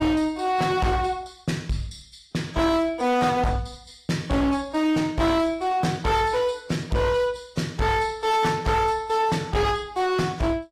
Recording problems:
codec artefacts; AAC, log-spectral distance 3 dB, nothing above 15.1 kHz
distortion; hard clipping, signal-to-distortion ratio 8 dB

